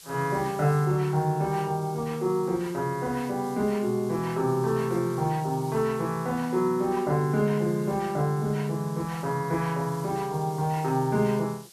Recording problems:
background hiss; SNR 21 dB

